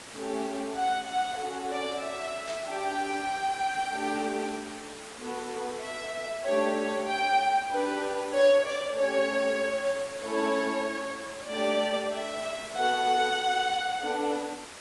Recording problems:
lossy codec; AAC, log-spectral distance 8 dB
hiss; slope -2 dB per octave, SNR 13 dB
burst of static; at 2.5 s; peak -9 dB vs average level

